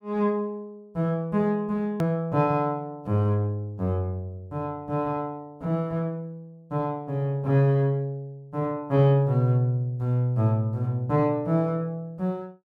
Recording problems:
edit click; at 2 s

